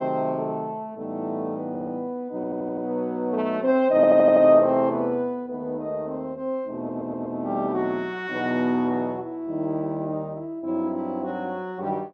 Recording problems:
audio stuttering; 4 times, first at 1.5 s

